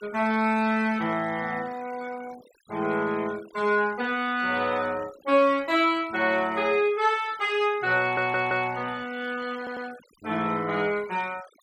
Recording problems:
noise reduction artefacts; signal-to-artefact ratio 22 dB
stutter; at 8 s and at 9.5 s

